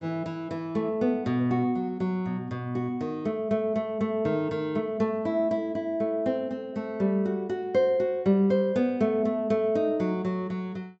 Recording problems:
low-pass filter; nothing above 7.8 kHz

